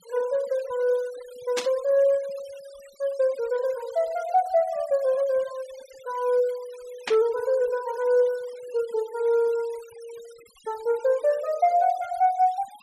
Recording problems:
denoising artefacts; signal-to-artefact ratio 24 dB
burst of static; at 1.5 s and at 7 s; peak 0 dB vs average level

